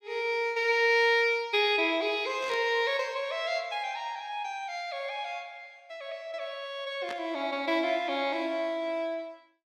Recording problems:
static burst; at 2.5 s and at 7 s; peak -8 dB vs average level

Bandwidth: 15.5 kHz